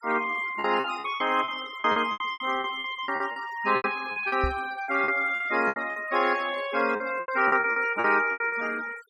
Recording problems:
noise reduction artefacts; signal-to-artefact ratio 17 dB
packet loss; 16% of the sound replaced, filled with repeated pitch periods
microphone thump; at 4.5 s; peak -1 dB vs average level

